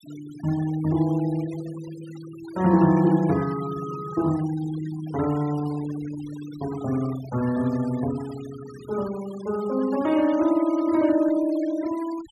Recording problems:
noise reduction artefacts; signal-to-artefact ratio 18 dB

